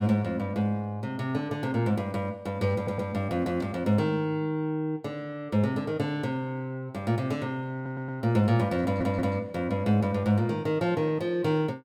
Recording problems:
stutter; at 3 s, at 7.5 s and at 9 s

